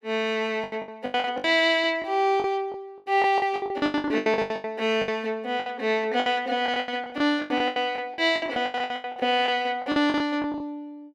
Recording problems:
lost packets; 21% of the sound replaced, filled with the last packet

